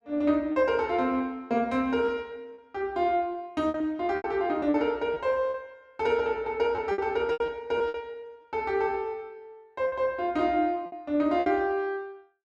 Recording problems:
lost packets; 7% of the sound replaced, filled with repeated pitch periods

